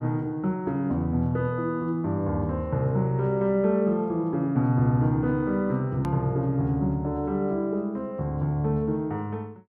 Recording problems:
edit click; at 6 s

